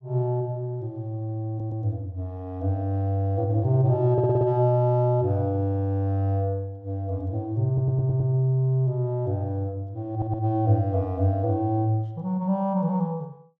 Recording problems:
audio stuttering; 4 times, first at 1.5 s

